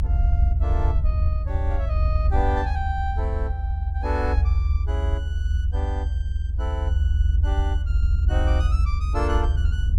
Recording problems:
rumble; below 78 Hz, SNR -9 dB

